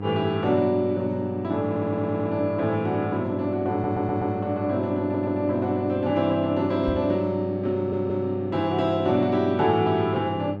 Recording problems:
hum; 50 Hz, harmonics up to 1.3 kHz, SNR 8 dB
stutter; 4 times, first at 1.5 s
knock on the microphone; at 7 s; peak -1 dB vs average level

